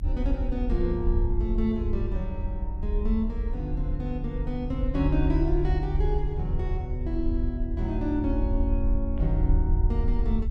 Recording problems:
low-frequency rumble; below 66 Hz, strongest tone 32 Hz, SNR -1 dB

